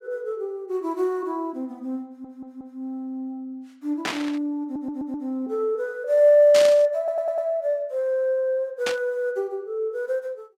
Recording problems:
stutter; at 2 s, at 4.5 s and at 7 s
static burst; at 4 s, at 6.5 s and at 9 s; peak +1 dB vs average level

